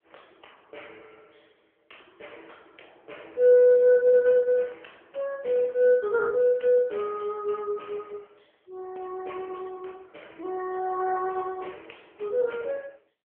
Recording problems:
telephone audio; 300 Hz to 3.4 kHz, AMR-NB

